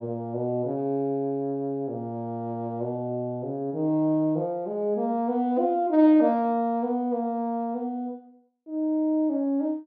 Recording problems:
none

